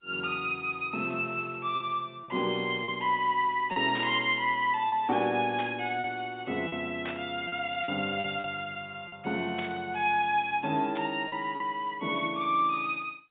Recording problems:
phone line; 130 Hz to 3.7 kHz, G.711
packet loss; 4% of the sound replaced, filled with repeated pitch periods
static burst; 5 times, first at 4 s; peak -6 dB vs average level

